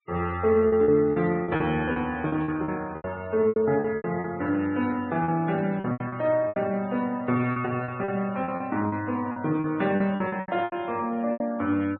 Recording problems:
treble cut off; nothing above 4.2 kHz
noise reduction artefacts; signal-to-artefact ratio 23 dB
packet loss; 14% of the sound replaced, filled with repeated pitch periods
static burst; at 2.5 s; peak -22 dB vs average level

